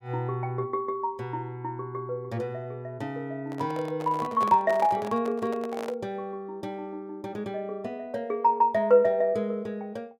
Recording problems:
microphone handling noise; from 3.5 to 6 s; peak -4 dB vs average level

